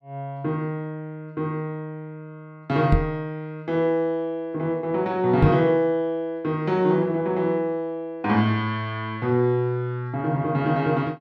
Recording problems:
microphone thump; at 3 s and at 5.5 s; peak +8 dB vs average level

